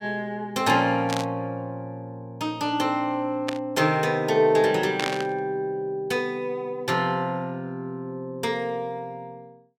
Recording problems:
burst of static; at 1 s, at 3.5 s and at 5 s; peak +2 dB vs average level

